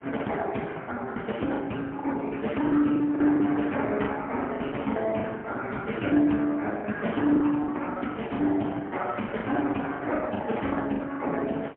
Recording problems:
phone line; 170 Hz to 3.1 kHz, AMR-NB, then MP3
packet loss; 12% of the sound replaced, filled with the last packet

